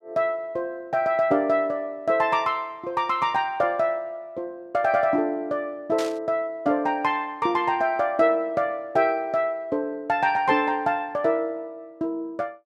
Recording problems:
static burst; at 6 s; peak -6 dB vs average level

